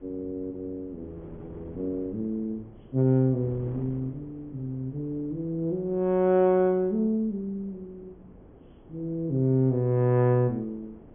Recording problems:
treble cut off; nothing above 3.4 kHz
wind noise; below 430 Hz, SNR 22 dB

